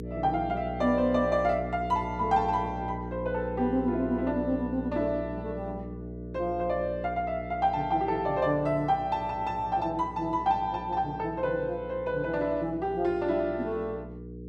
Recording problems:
hum; 60 Hz, harmonics up to 480 Hz, SNR 10 dB

